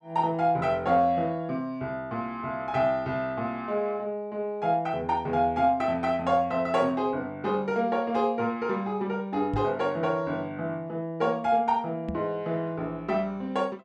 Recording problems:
microphone bump; at 9.5 s and at 12 s; peak -1 dB vs average level

